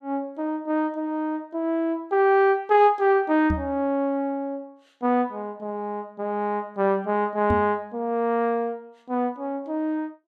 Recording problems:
knock on the microphone; at 3.5 s and at 7.5 s; peak +2 dB vs average level

